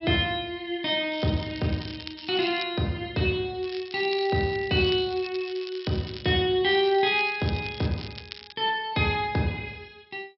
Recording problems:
treble cut off; nothing above 5.5 kHz
crackling; from 1 to 2.5 s, from 3.5 to 6.5 s and from 6.5 to 8.5 s; loose cable, SNR 15 dB

